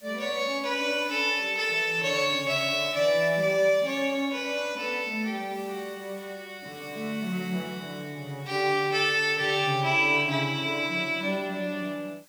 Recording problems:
background hiss; slope +1 dB per octave, SNR 26 dB

